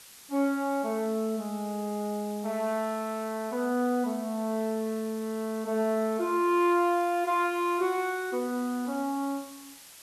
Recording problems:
background hiss; slope +1 dB per octave, SNR 18 dB

